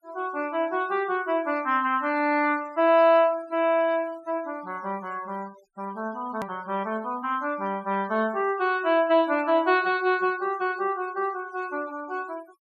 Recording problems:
denoising artefacts; signal-to-artefact ratio 25 dB
click at an edit; at 6.5 s

